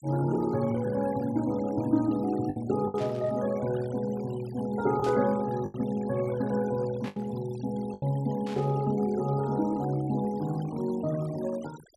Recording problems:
noise reduction artefacts; signal-to-artefact ratio 20 dB
packet loss; 3% of the sound replaced, filled with the last packet
burst of static; 4 times, first at 3 s; peak -10 dB vs average level

